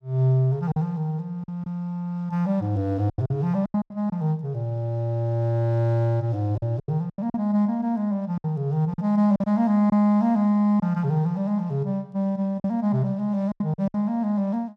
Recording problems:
packet loss; 7% of the sound replaced, filled with silence

